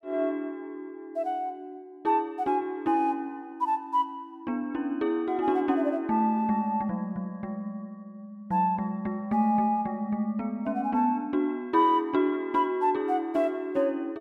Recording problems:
none

